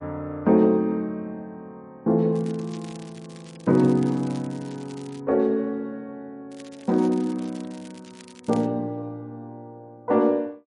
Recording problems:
codec artefacts; MP3, log-spectral distance 2 dB
crackle; from 2.5 to 5 s and from 6.5 to 8.5 s; loose cable, SNR 25 dB

